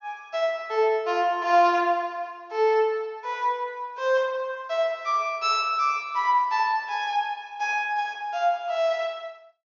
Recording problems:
treble missing; nothing above 7 kHz

